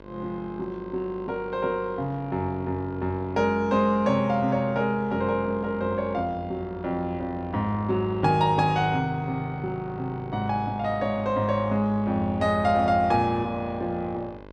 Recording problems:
hum; 50 Hz, harmonics up to 2.1 kHz, SNR 18 dB

